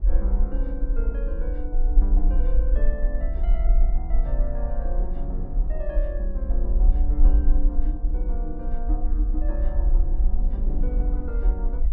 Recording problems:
low-frequency rumble; below 44 Hz, SNR -11 dB
wind on the microphone; below 230 Hz, SNR 7 dB

